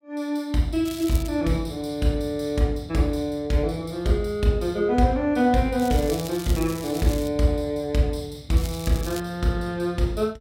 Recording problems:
crackle; at 1 s, from 6 to 7.5 s and at 8.5 s; loose cable, SNR 14 dB

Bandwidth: 16 kHz